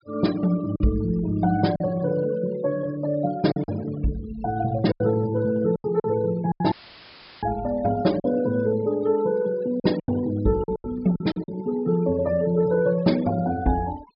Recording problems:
low-pass filter; nothing above 5.3 kHz
denoising artefacts; signal-to-artefact ratio 20 dB
lost packets; 6% of the sound replaced, filled with silence
audio cutting out; at 6.5 s for 0.5 s; filled with static

